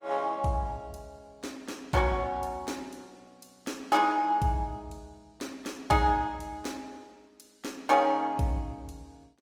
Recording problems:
lossy codec; Opus, log-spectral distance 3 dB, nothing above 19 kHz

